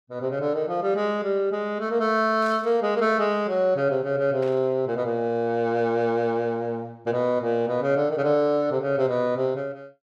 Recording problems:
static burst; at 2.5 s and at 4.5 s; peak -16 dB vs average level

